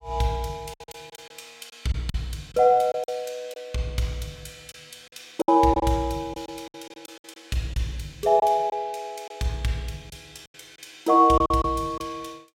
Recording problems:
lost packets; 8% of the sound replaced, filled with silence

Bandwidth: 16 kHz